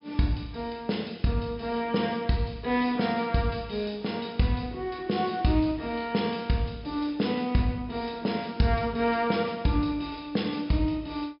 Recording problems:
treble missing; nothing above 5.3 kHz

